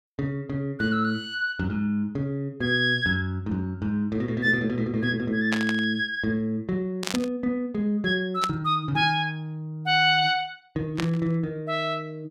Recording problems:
static burst; 4 times, first at 5.5 s; peak +1 dB vs average level

